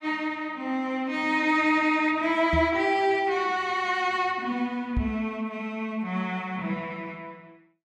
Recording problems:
knock on the microphone; at 2.5 s and at 5 s; peak +1 dB vs average level

